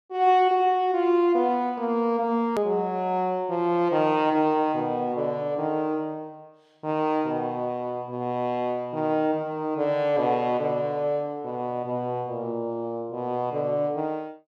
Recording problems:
click at an edit; at 2.5 s

